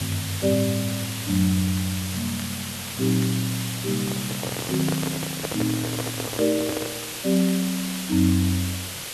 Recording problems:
hiss; slope 0 dB per octave, SNR 5 dB
crackling; vinyl, SNR 21 dB
microphone handling noise; from 4 to 7 s; peak -1 dB vs average level

